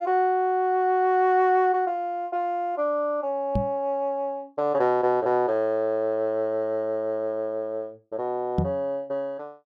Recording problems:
knock on the microphone; at 3.5 s and at 8.5 s; peak +5 dB vs average level

